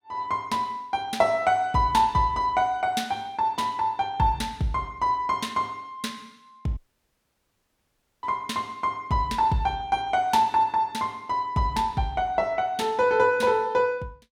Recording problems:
dropout; at 7 s for 1.5 s

